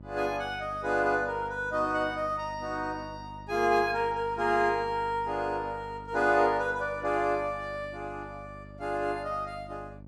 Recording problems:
hum; 50 Hz, harmonics up to 650 Hz, SNR 18 dB

